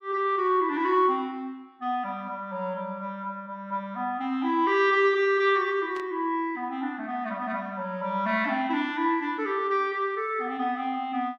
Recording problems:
static burst; at 6 s; peak -14 dB vs average level

